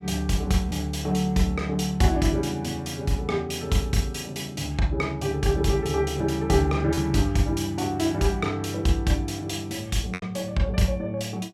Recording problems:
packet loss; 1.1% of the sound replaced, filled with repeated pitch periods

